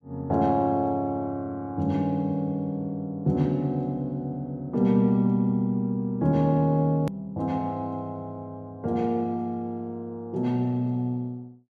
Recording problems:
click at an edit; at 7 s

